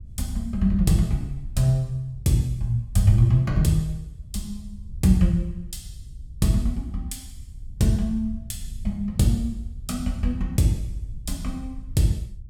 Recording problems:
rumble; below 82 Hz, SNR 16 dB

